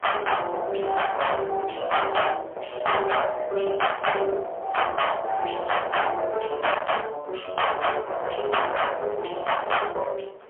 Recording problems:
telephone audio; 340 Hz to 3.2 kHz, AMR-NB, then MP3
distortion; hard clipping, uneven, signal-to-distortion ratio 8 dB
wind noise; below 1.7 kHz, SNR 14 dB

